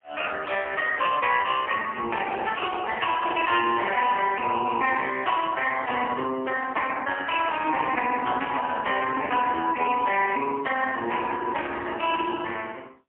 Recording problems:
phone line; 240 Hz to 2.9 kHz, AMR-NB, then MP3

